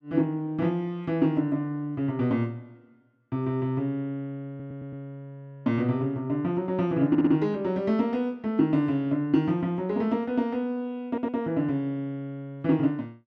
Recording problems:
audio stuttering; at 4.5 s, at 7 s and at 11 s

